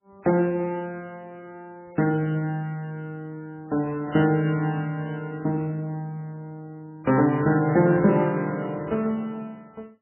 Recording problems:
lossy compression; MP3, then MP3, log-spectral distance 2 dB, nothing above 3 kHz

